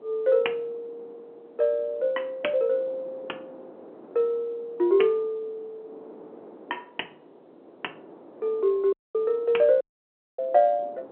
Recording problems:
phone line; 300 Hz to 3.1 kHz, G.711
wind noise; below 610 Hz, SNR 23 dB
audio cutting out; at 9 s and at 10 s for 0.5 s

